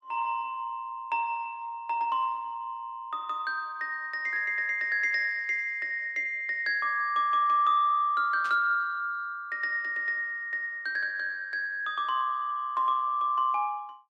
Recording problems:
static burst; at 8.5 s; peak -12 dB vs average level

